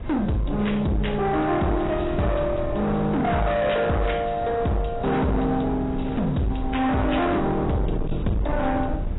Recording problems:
lossy compression; AAC, log-spectral distance 4 dB, nothing above 3.8 kHz
distorted audio; hard clipping, signal-to-distortion ratio 7 dB
rumble; below 150 Hz, SNR 10 dB
wind noise; below 310 Hz, SNR 16 dB

